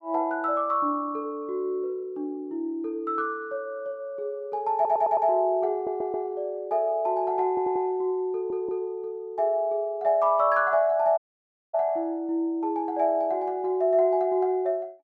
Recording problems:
audio stuttering; 4 times, first at 4.5 s
audio cutting out; at 11 s for 0.5 s

